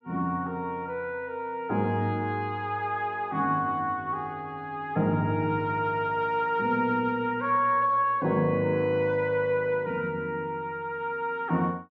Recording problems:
none

